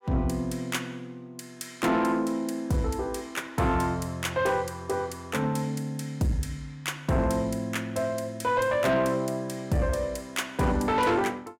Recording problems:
distortion; soft clipping, signal-to-distortion ratio 10 dB

